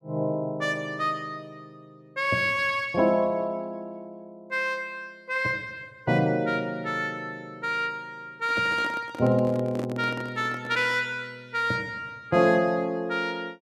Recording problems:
microphone handling noise; from 8.5 to 11 s; peak -5 dB vs average level

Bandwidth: 14 kHz